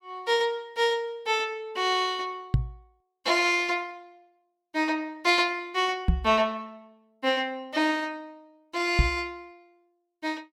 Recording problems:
microphone bump; at 2.5 s, at 6 s and at 9 s; peak +7 dB vs average level

